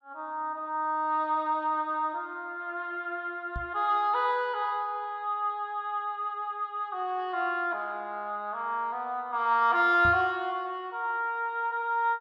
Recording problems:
microphone thump; at 3.5 s and at 10 s; peak -3 dB vs average level

